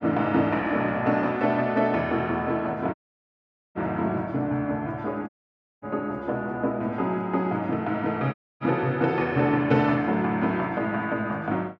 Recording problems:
audio cutting out; at 3 s for 1 s, at 5.5 s for 0.5 s and at 8.5 s

